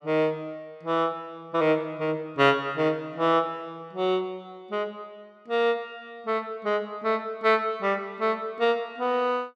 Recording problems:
none

